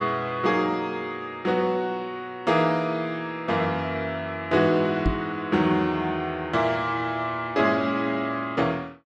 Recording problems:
microphone thump; at 5 s; peak +3 dB vs average level

